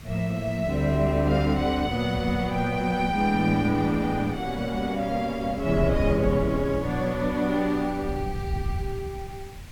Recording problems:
hiss; SNR 24 dB
wind noise; below 110 Hz, SNR 11 dB

